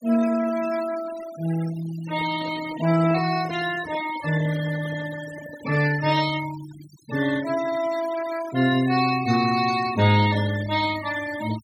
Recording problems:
denoising artefacts; signal-to-artefact ratio 13 dB
handling noise; from 2 to 6 s; peak -13 dB vs average level

